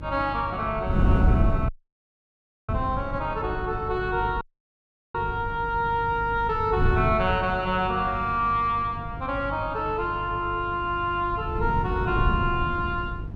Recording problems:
hum; 50 Hz, harmonics up to 650 Hz, SNR 13 dB
wind noise; below 150 Hz, SNR 4 dB
dropout; at 1.5 s for 1 s and at 4.5 s for 0.5 s

